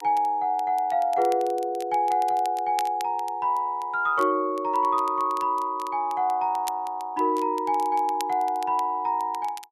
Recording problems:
crackle; vinyl, SNR 21 dB

